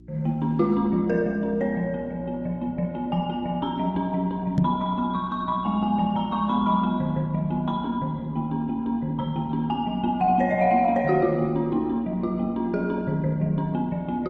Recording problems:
lossy codec; Opus, log-spectral distance 2 dB
hum; 60 Hz, harmonics up to 360 Hz, SNR 22 dB
knock on the microphone; at 4.5 s; peak +7 dB vs average level

